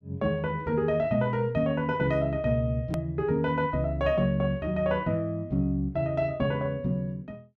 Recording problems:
hard cut with a click; at 3 s

